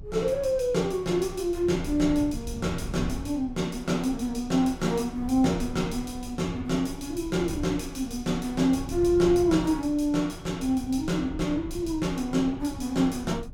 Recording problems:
low-frequency rumble; below 130 Hz, SNR 14 dB

